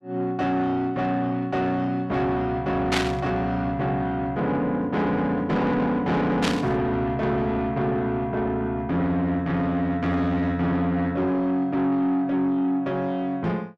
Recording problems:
distorted audio; soft clipping, signal-to-distortion ratio 11 dB
static burst; at 3 s and at 6.5 s; peak +4 dB vs average level

